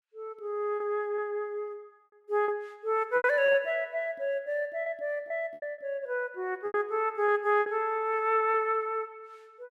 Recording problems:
lost packets; 7% of the sound replaced, filled with repeated pitch periods

